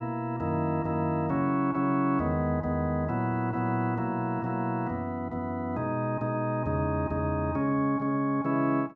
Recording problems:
none

